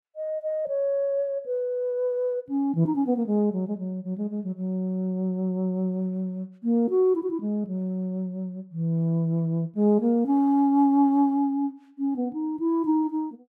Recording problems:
none

